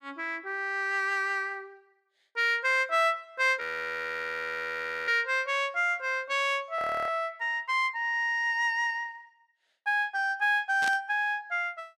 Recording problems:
audio freezing; at 3.5 s for 1.5 s and at 7 s
static burst; at 11 s; peak -4 dB vs average level

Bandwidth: 14.5 kHz